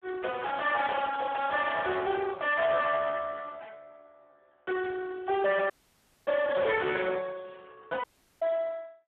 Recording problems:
telephone audio; 320 Hz to 3.4 kHz, Speex
distortion; soft clipping, signal-to-distortion ratio 7 dB
audio cutting out; at 5.5 s for 0.5 s and at 8 s

